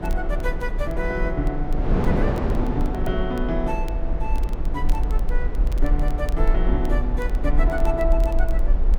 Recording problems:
rumble; below 46 Hz, SNR -2 dB
wind noise; below 430 Hz, SNR 1 dB
crackling; vinyl, SNR 22 dB

